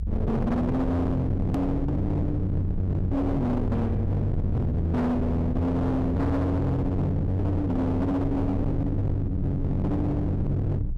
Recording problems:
distortion; hard clipping, signal-to-distortion ratio 6 dB
low-frequency rumble; below 140 Hz, strongest tone 24 Hz, SNR 6 dB
click at an edit; at 1.5 s

